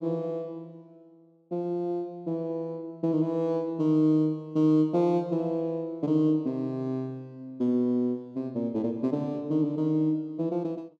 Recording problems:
none

